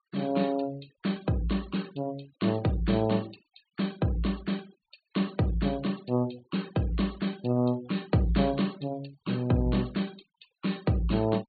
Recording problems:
low-pass filter; nothing above 4.3 kHz
noise reduction artefacts; signal-to-artefact ratio 22 dB

